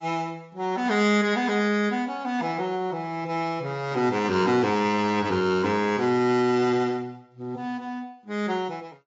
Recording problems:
codec artefacts; AAC, log-spectral distance 2 dB, nothing above 6.7 kHz

